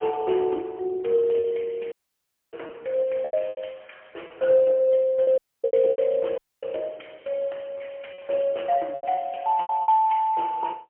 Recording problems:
telephone audio; 260 Hz to 3.2 kHz, AMR-NB, then MP3
packet loss; 9% of the sound replaced, filled with repeated pitch periods
audio cutting out; at 2 s for 0.5 s, at 5.5 s and at 6.5 s

